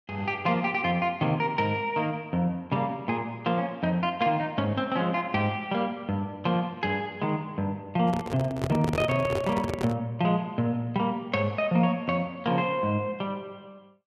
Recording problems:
handling noise; from 8 to 10 s; peak +1 dB vs average level

